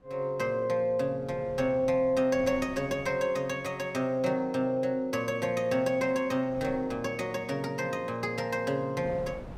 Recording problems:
wind on the microphone; below 510 Hz, SNR 20 dB

